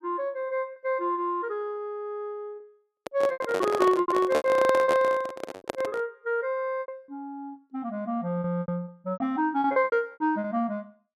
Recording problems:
packet loss; 11% of the sound replaced, filled with repeated pitch periods
microphone handling noise; from 3 to 6 s; peak +4 dB vs average level

